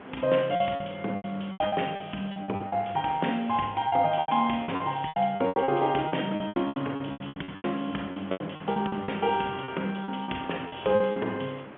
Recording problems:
phone line; 220 Hz to 3.5 kHz, G.711
wind on the microphone; below 1.5 kHz, SNR 16 dB
lost packets; 17% of the sound replaced, filled with repeated pitch periods

